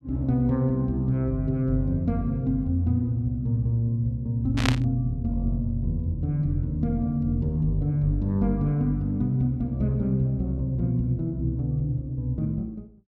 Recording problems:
static burst; at 4.5 s; peak +4 dB vs average level

